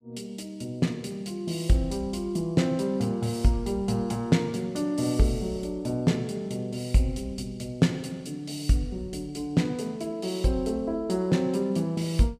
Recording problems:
none

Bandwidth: 14.5 kHz